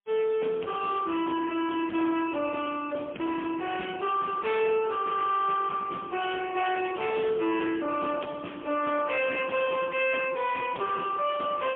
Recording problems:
phone line; 220 Hz to 3.4 kHz, AMR-NB, then MP3
distortion; soft clipping, signal-to-distortion ratio 12 dB

